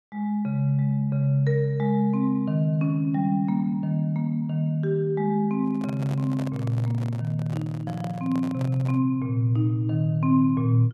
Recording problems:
handling noise; from 5.5 to 9 s; peak -9 dB vs average level

